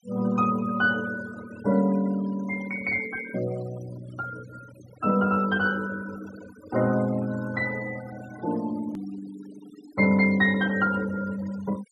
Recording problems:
noise reduction artefacts; signal-to-artefact ratio 18 dB
click at an edit; at 9 s

